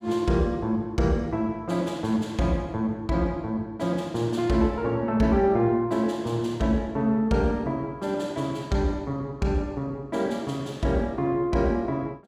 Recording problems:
none

